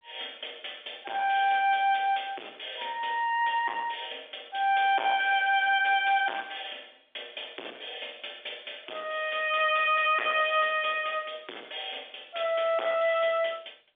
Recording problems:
telephone audio; 320 Hz to 3.6 kHz, G.711
distorted audio; soft clipping, signal-to-distortion ratio 8 dB

